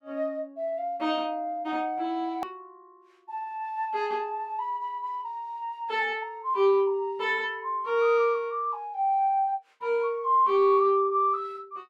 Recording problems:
click at an edit; at 2.5 s

